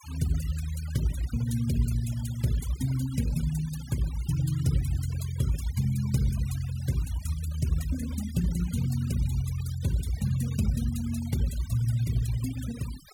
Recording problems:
noise reduction artefacts; signal-to-artefact ratio 16 dB

